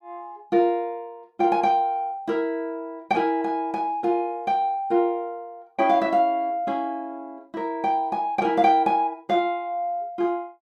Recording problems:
none

